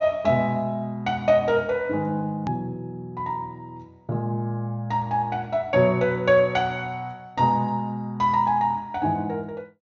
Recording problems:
low-pass filter; nothing above 7.1 kHz
edit click; at 2.5 s

